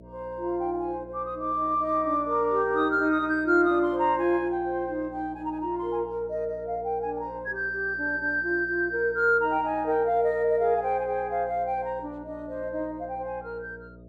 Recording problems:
hum; 60 Hz, harmonics up to 660 Hz, SNR 22 dB

